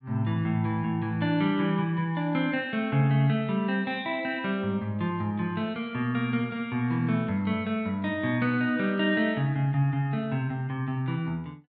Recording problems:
treble missing; nothing above 4.8 kHz

